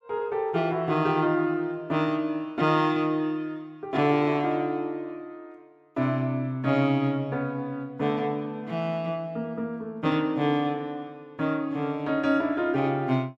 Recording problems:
none

